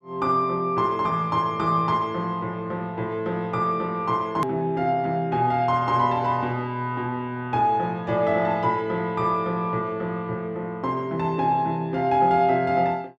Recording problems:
click at an edit; at 4.5 s

